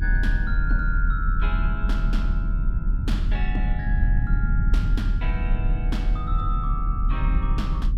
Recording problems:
rumble; below 58 Hz, strongest tone 38 Hz, SNR -7 dB

